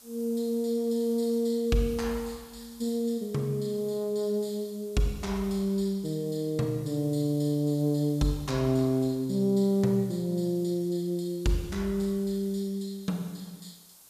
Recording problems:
background hiss; SNR 23 dB

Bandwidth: 14.5 kHz